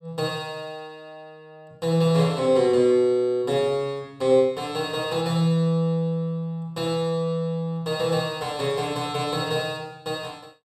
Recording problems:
none

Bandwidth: 16.5 kHz